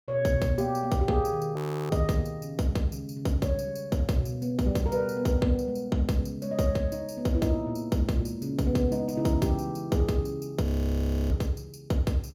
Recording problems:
audio freezing; at 1.5 s and at 11 s for 0.5 s

